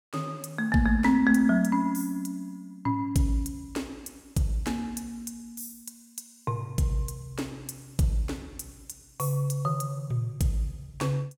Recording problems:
none

